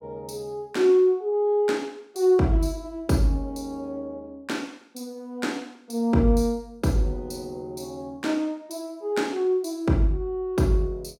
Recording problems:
none

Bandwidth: 16.5 kHz